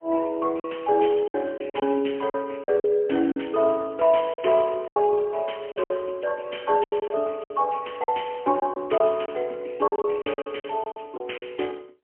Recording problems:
phone line; 240 Hz to 3.1 kHz, AMR-NB, then MP3
lost packets; 10% of the sound replaced, filled with silence

